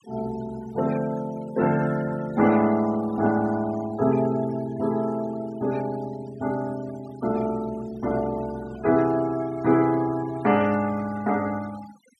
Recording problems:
denoising artefacts; signal-to-artefact ratio 19 dB

